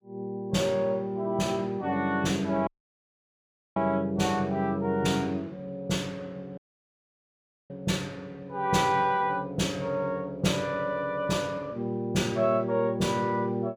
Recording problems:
audio cutting out; at 2.5 s for 1 s and at 6.5 s for 1 s

